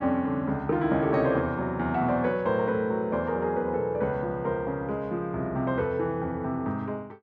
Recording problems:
none

